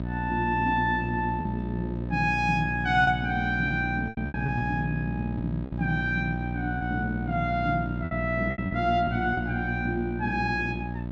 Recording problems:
electrical hum; 60 Hz, harmonics up to 960 Hz, SNR 4 dB
lost packets; 5% of the sound replaced, filled with repeated pitch periods

